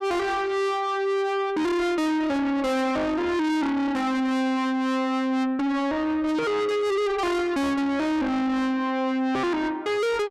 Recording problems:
distorted audio; soft clipping, signal-to-distortion ratio 6 dB

